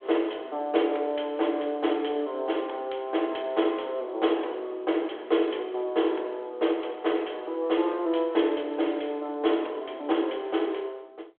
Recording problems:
telephone audio; 260 Hz to 3.4 kHz, G.726

